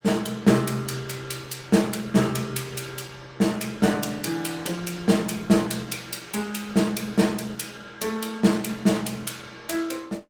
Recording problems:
codec artefacts; Opus, log-spectral distance 5 dB, nothing above 19 kHz

